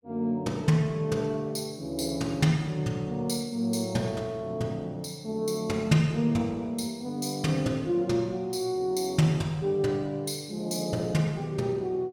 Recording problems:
none

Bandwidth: 17.5 kHz